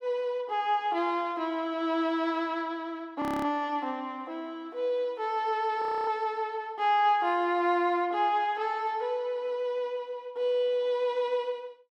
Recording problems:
audio freezing; at 3 s and at 6 s

